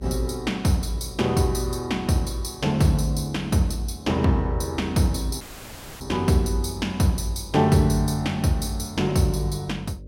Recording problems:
hum; 50 Hz, harmonics up to 600 Hz, SNR 21 dB
dropout; at 5.5 s for 0.5 s

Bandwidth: 16 kHz